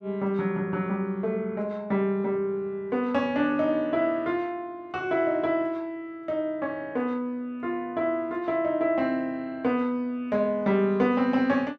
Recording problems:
none

